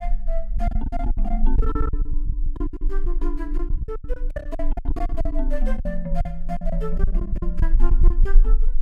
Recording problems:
low-frequency rumble; below 36 Hz, strongest tone 24 Hz, SNR -7 dB
lost packets; 17% of the sound replaced, filled with silence

